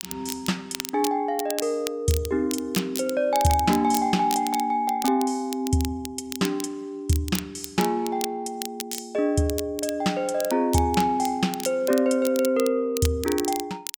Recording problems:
crackle; vinyl, SNR 11 dB

